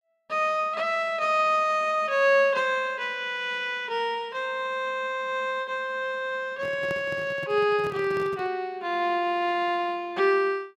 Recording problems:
microphone handling noise; from 6.5 to 8.5 s; peak -7 dB vs average level

